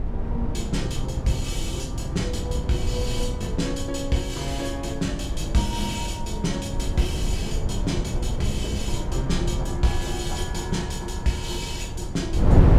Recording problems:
wind on the microphone; below 140 Hz, SNR 0 dB

